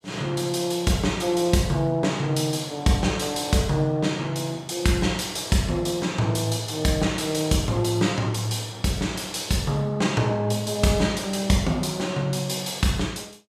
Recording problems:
none

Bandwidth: 14 kHz